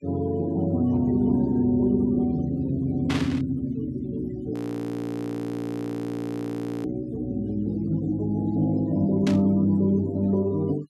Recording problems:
denoising artefacts; signal-to-artefact ratio 23 dB
static burst; at 3 s and at 9.5 s; peak -2 dB vs average level
frozen audio; at 4.5 s for 2.5 s

